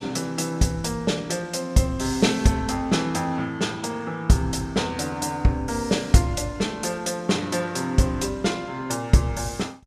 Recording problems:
none

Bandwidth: 14.5 kHz